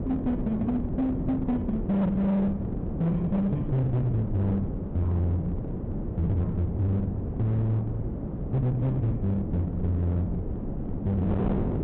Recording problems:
treble missing; nothing above 3.9 kHz
distortion; hard clipping, signal-to-distortion ratio 8 dB
wind noise; below 290 Hz, SNR 5 dB

